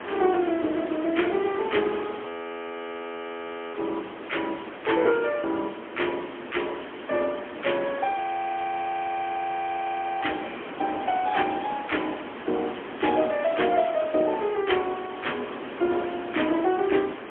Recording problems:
telephone audio; 260 Hz to 3.3 kHz, AMR-NB, then MP3
hiss; SNR 10 dB
frozen audio; at 2.5 s for 1.5 s and at 8 s for 2 s

